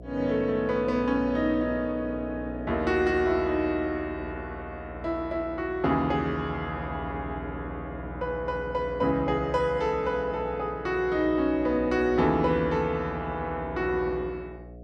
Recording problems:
electrical hum; 60 Hz, harmonics up to 720 Hz, SNR 14 dB

